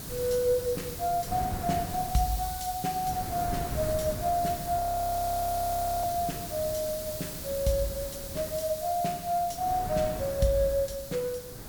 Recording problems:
hiss; slope +5 dB per octave, SNR 9 dB
wind on the microphone; below 340 Hz, SNR 11 dB
audio freezing; at 5 s for 1 s

